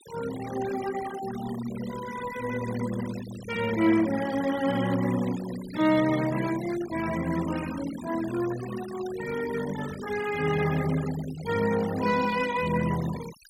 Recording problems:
denoising artefacts; signal-to-artefact ratio 13 dB

